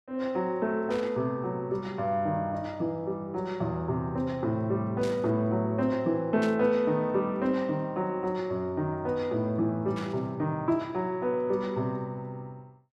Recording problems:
static burst; 4 times, first at 1 s; peak -7 dB vs average level

